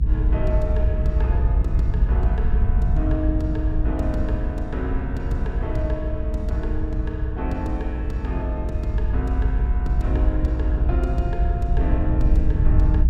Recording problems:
low-frequency rumble; below 68 Hz, SNR -6 dB

